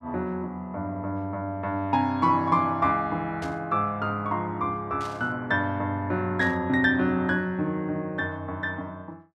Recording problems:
static burst; at 3.5 s, at 5 s and at 6.5 s; peak -11 dB vs average level

